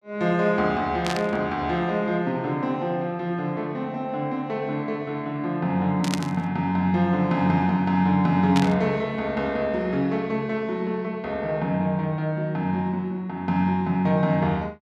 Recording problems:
static burst; at 1 s, at 6 s and at 8.5 s; peak 0 dB vs average level

